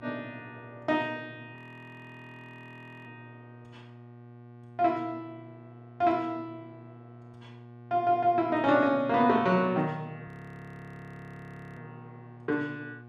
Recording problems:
electrical hum; 60 Hz, harmonics up to 1.6 kHz, SNR 21 dB
frozen audio; at 1.5 s for 1.5 s and at 10 s for 1.5 s

